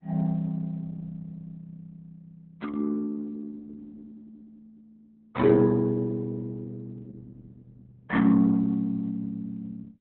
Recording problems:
codec artefacts; AAC, then Opus, log-spectral distance 2 dB, nothing above 3.8 kHz

